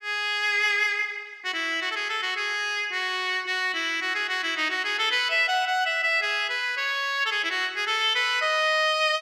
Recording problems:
none

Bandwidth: 14.5 kHz